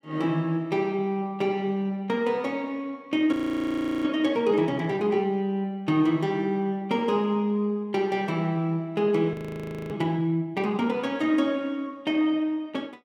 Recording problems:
audio freezing; at 3.5 s for 0.5 s and at 9.5 s for 0.5 s

